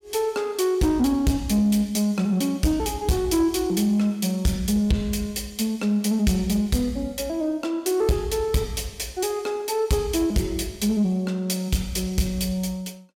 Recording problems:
distorted audio; soft clipping, signal-to-distortion ratio 11 dB

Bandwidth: 16.5 kHz